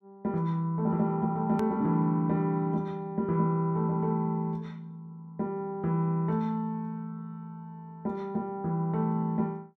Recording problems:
edit click; at 1.5 s

